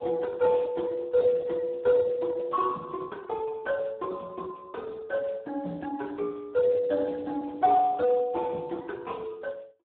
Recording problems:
phone line; 150 Hz to 2.2 kHz, Speex

